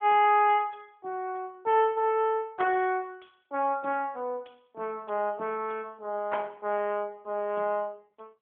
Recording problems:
phone line; 240 Hz to 3.3 kHz, AMR-NB

